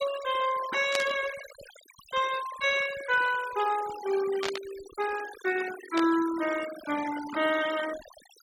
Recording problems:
denoising artefacts; signal-to-artefact ratio 13 dB
burst of static; at 1 s, at 4.5 s and at 6 s; peak +2 dB vs average level

